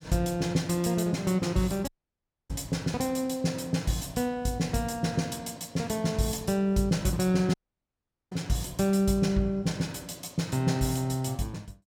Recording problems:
audio cutting out; at 2 s for 0.5 s and at 7.5 s for 1 s

